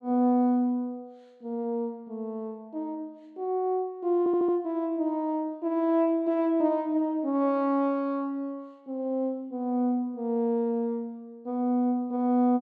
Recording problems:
audio stuttering; at 4 s

